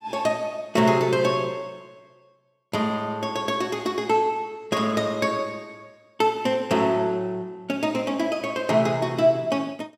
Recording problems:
none

